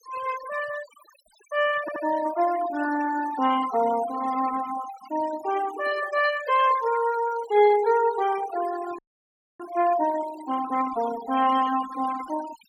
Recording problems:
noise reduction artefacts; signal-to-artefact ratio 14 dB
audio stuttering; at 2 s
audio freezing; at 9 s for 0.5 s

